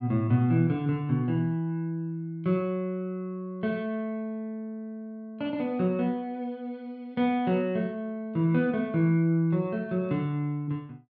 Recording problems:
none

